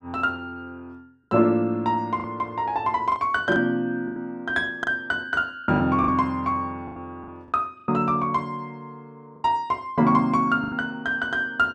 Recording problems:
packet loss; 6% of the sound replaced, filled with the last packet

